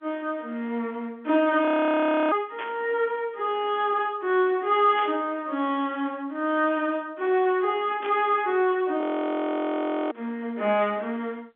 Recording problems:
telephone audio; 260 Hz to 3.6 kHz, G.711
frozen audio; at 1.5 s for 0.5 s and at 9 s for 1 s
static burst; at 2.5 s, at 5 s and at 8 s; peak -7 dB vs average level

